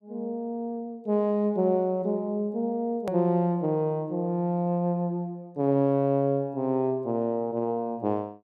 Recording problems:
click at an edit; at 3 s

